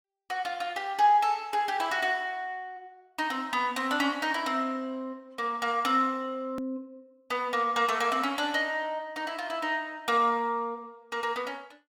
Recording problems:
edit click; at 6.5 s

